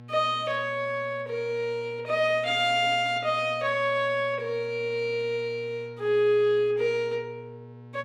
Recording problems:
hum; 60 Hz, harmonics up to 1.3 kHz, SNR 20 dB

